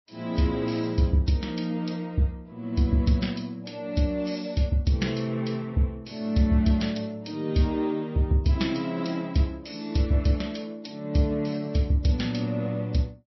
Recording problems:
codec artefacts; MP3, log-spectral distance 3 dB, nothing above 5.7 kHz

